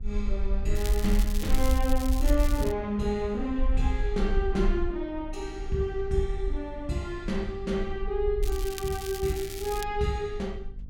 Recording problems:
hum; 50 Hz, harmonics up to 700 Hz, SNR 20 dB
rumble; below 52 Hz, SNR 2 dB
crackle; from 1 to 2.5 s and from 8.5 to 10 s; loose cable, SNR 10 dB

